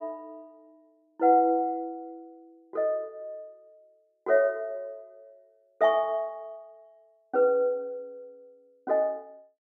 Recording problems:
none

